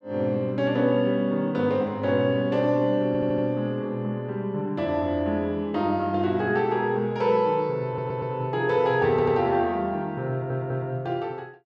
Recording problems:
stutter; 4 times, first at 3 s

